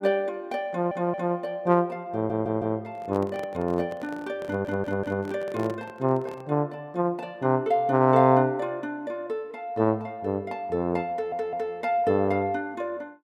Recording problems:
stutter; 4 times, first at 0.5 s
handling noise; from 3 to 6.5 s; peak -7 dB vs average level

